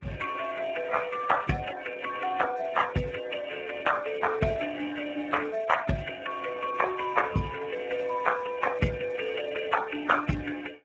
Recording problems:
codec artefacts; MP3, then Speex, log-spectral distance 10 dB

